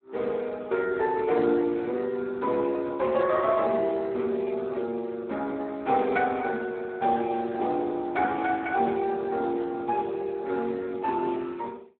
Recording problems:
phone line; 240 Hz to 3.8 kHz, Speex

